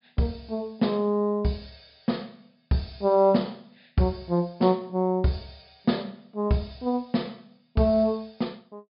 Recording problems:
treble cut off; nothing above 5.5 kHz

